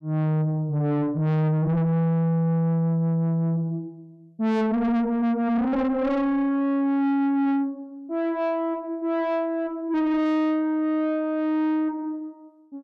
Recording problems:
distorted audio; soft clipping, signal-to-distortion ratio 8 dB

